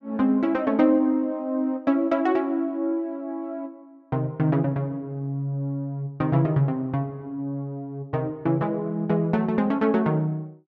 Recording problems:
none

